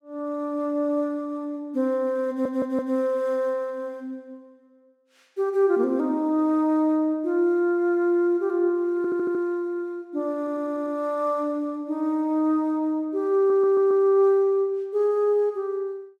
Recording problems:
stutter; 4 times, first at 2.5 s

